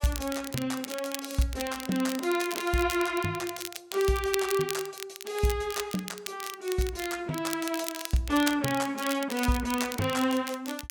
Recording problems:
crackle; vinyl, SNR 9 dB

